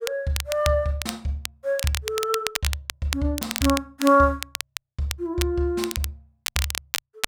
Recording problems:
crackling; vinyl, SNR 6 dB

